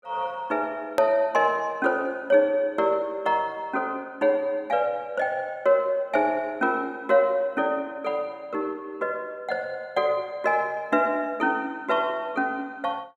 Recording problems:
click at an edit; at 1 s

